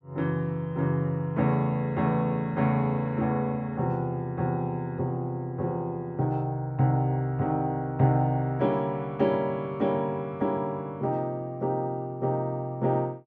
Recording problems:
none

